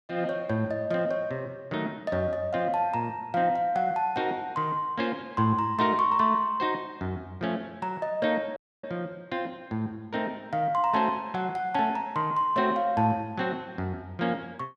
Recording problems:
audio cutting out; at 8.5 s

